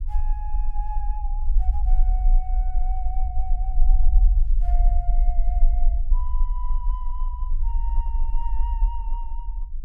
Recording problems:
rumble; below 42 Hz, strongest tone 20 Hz, SNR -15 dB

